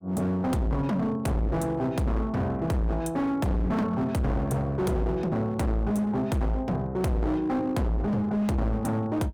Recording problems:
distortion; hard clipping, signal-to-distortion ratio 7 dB

